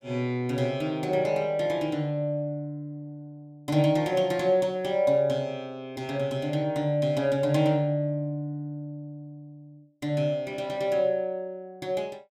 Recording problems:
none

